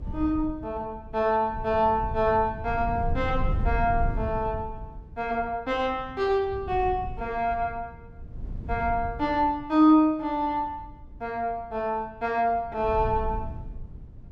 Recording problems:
wind on the microphone; below 100 Hz, SNR 10 dB

